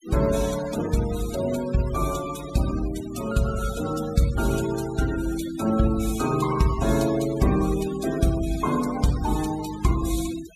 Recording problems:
denoising artefacts; signal-to-artefact ratio 14 dB

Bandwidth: 14.5 kHz